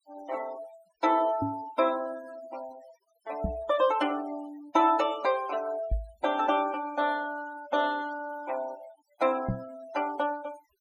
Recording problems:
denoising artefacts; signal-to-artefact ratio 19 dB
knock on the microphone; 4 times, first at 1.5 s; peak +3 dB vs average level

